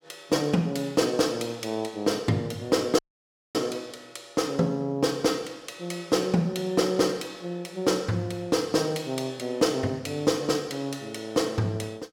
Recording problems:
dropout; at 3 s for 0.5 s

